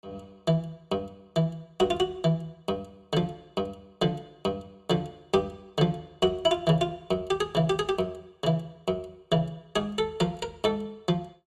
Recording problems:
none

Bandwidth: 14.5 kHz